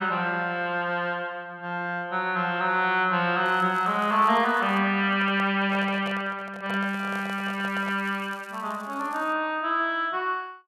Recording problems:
crackling; from 3.5 to 5 s and from 7 to 9.5 s; loose cable, SNR 28 dB
handling noise; from 5 to 8 s; peak -7 dB vs average level

